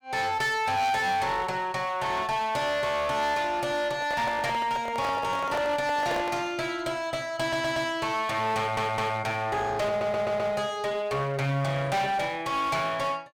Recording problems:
distorted audio; hard clipping, uneven, signal-to-distortion ratio 7 dB
microphone handling noise; from 4 to 6.5 s; peak +1 dB vs average level
audio stuttering; at 7.5 s, at 8.5 s and at 10 s

